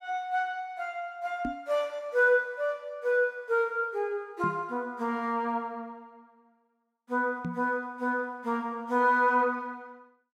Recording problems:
microphone bump; at 1.5 s, at 4.5 s and at 7.5 s; peak -2 dB vs average level

